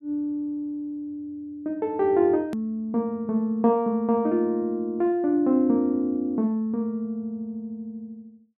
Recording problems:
click at an edit; at 2.5 s

